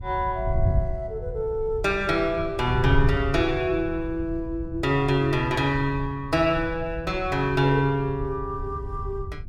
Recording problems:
wind noise; below 98 Hz, SNR 8 dB

